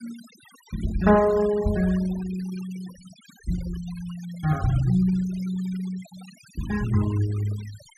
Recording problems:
noise reduction artefacts; signal-to-artefact ratio 19 dB

